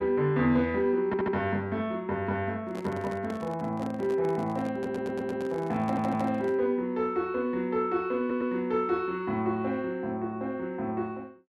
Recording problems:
stutter; 4 times, first at 1 s
microphone handling noise; from 2.5 to 6.5 s; peak -5 dB vs average level

